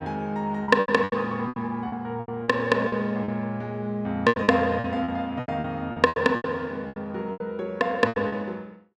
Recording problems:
lost packets; 15% of the sound replaced, filled with repeated pitch periods

